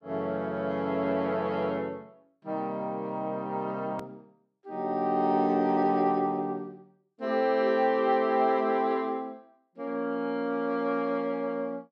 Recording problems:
hard cut with a click; at 4 s

